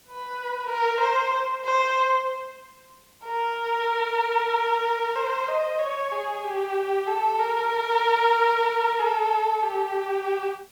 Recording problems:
hiss; slope -1 dB per octave, SNR 30 dB

